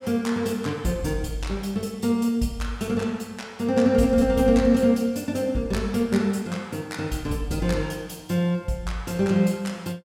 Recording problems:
none

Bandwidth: 16.5 kHz